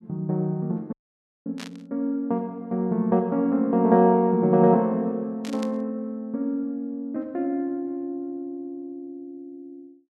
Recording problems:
dropout; at 1 s for 0.5 s
static burst; at 1.5 s and at 5.5 s; peak -10 dB vs average level

